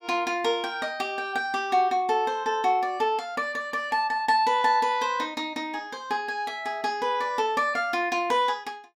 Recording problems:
none

